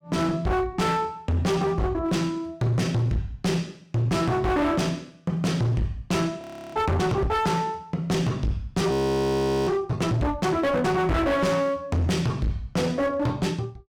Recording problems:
distorted audio; hard clipping, signal-to-distortion ratio 7 dB
audio freezing; at 6.5 s and at 9 s for 1 s

